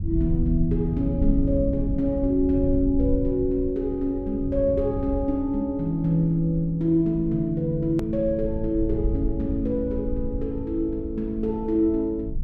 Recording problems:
rumble; below 90 Hz, SNR 7 dB
click at an edit; at 8 s

